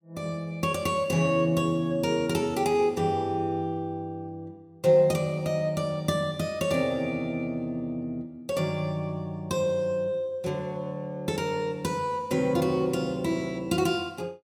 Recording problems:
none

